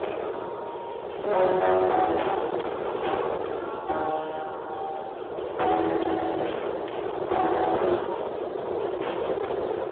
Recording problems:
telephone audio; 300 Hz to 3.5 kHz, Speex
distortion; hard clipping, uneven, signal-to-distortion ratio 10 dB
wind on the microphone; below 750 Hz, SNR 4 dB

